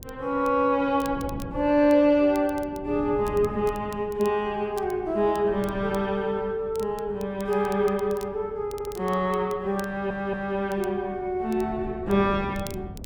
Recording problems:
wind noise; below 260 Hz, SNR 16 dB
crackling; vinyl, SNR 24 dB
audio stuttering; at 8.5 s and at 10 s

